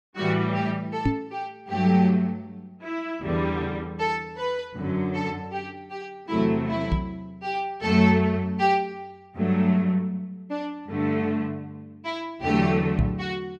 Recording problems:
knock on the microphone; at 1 s, at 7 s and at 13 s; peak +6 dB vs average level

